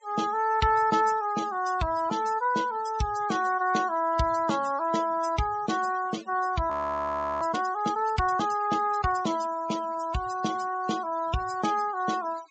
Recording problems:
treble missing; nothing above 8 kHz
denoising artefacts; signal-to-artefact ratio 18 dB
frozen audio; at 6.5 s for 0.5 s

